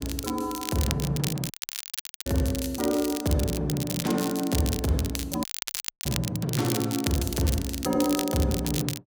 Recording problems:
crackle; vinyl, SNR 6 dB
audio cutting out; at 1.5 s for 1 s and at 5.5 s for 0.5 s

